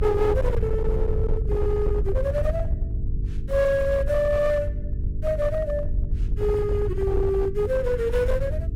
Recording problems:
distortion; hard clipping, uneven, signal-to-distortion ratio 12 dB
hum; 50 Hz, harmonics up to 450 Hz, SNR 11 dB
low-frequency rumble; below 82 Hz, SNR 4 dB

